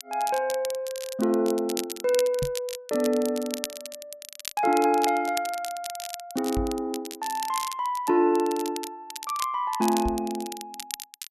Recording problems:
crackle; vinyl, SNR 11 dB
microphone bump; at 2.5 s, at 6.5 s and at 10 s; peak -1 dB vs average level

